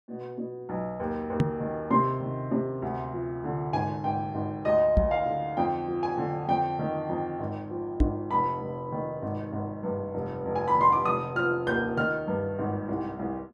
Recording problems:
knock on the microphone; at 1.5 s, at 5 s and at 8 s; peak +9 dB vs average level

